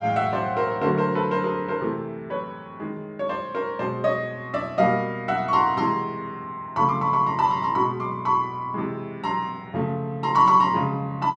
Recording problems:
none

